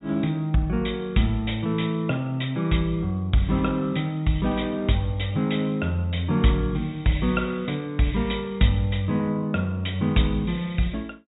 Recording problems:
treble cut off; nothing above 4 kHz

